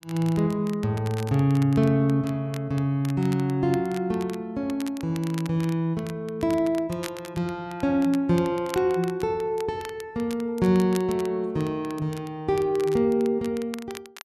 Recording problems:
crackling; vinyl, SNR 19 dB

